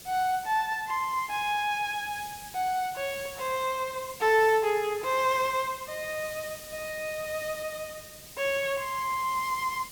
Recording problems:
background hiss; SNR 14 dB

